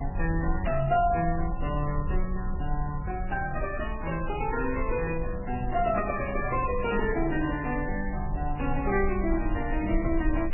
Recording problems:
codec artefacts; Vorbis, then MP3, log-spectral distance 3 dB, nothing above 2.8 kHz
rumble; below 56 Hz, strongest tone 26 Hz, SNR 6 dB

